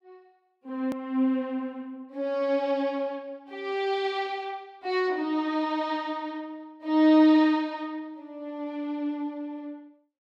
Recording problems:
hard cut with a click; at 1 s

